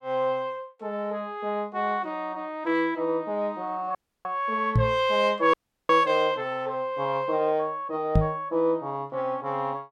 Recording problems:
audio cutting out; at 4 s and at 5.5 s
knock on the microphone; at 5 s and at 8 s; peak +8 dB vs average level

